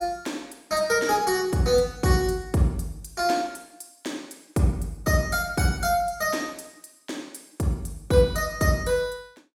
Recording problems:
none

